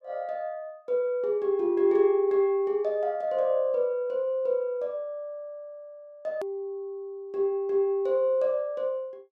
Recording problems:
edit click; at 6.5 s

